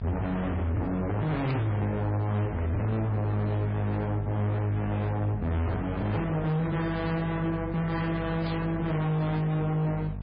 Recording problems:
lossy compression; MP3, then MP3, log-spectral distance 2 dB, nothing above 4.6 kHz
distortion; hard clipping, uneven, signal-to-distortion ratio 6 dB
hum; 50 Hz, harmonics up to 700 Hz, SNR 8 dB
burst of static; at 1.5 s and at 8.5 s; peak -6 dB vs average level

